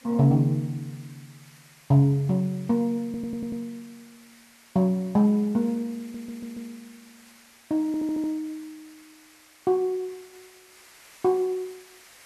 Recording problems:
hiss; SNR 26 dB
audio stuttering; at 3 s, at 6 s and at 8 s

